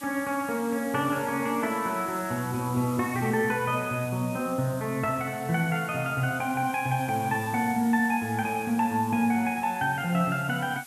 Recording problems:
hiss; slope 0 dB per octave, SNR 17 dB

